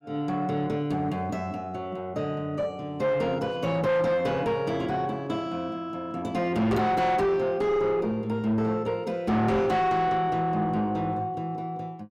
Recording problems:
distortion; soft clipping, signal-to-distortion ratio 7 dB

